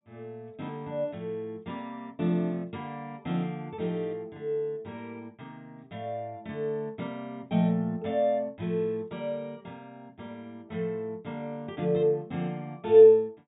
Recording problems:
treble missing; nothing above 4 kHz

